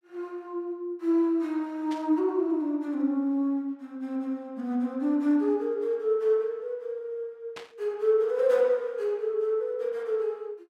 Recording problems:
burst of static; at 2 s and at 7.5 s; peak -9 dB vs average level

